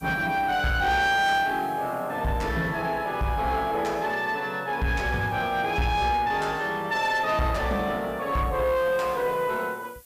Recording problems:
distorted audio; soft clipping, signal-to-distortion ratio 10 dB
background hiss; SNR 27 dB

